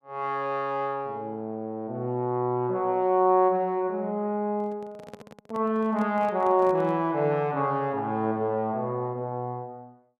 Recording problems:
handling noise; from 4.5 to 7 s; peak -12 dB vs average level

